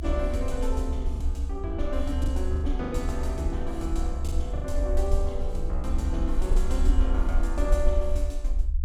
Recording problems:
low-frequency rumble; below 64 Hz, SNR -3 dB
packet loss; 5% of the sound replaced, filled with the last packet

